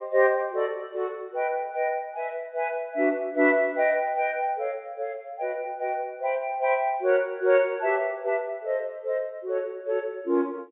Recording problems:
treble cut off; nothing above 4 kHz

